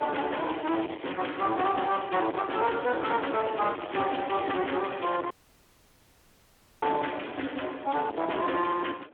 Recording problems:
phone line; 240 Hz to 3.3 kHz, Speex
distorted audio; soft clipping, signal-to-distortion ratio 7 dB
wind on the microphone; below 1 kHz, SNR 19 dB
crackling; from 3.5 to 5.5 s; loose cable, SNR 21 dB
audio cutting out; at 5.5 s for 1.5 s

